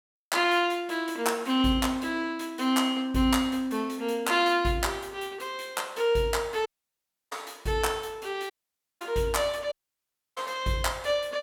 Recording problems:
dropout; at 6.5 s for 0.5 s, at 8.5 s for 0.5 s and at 9.5 s for 0.5 s

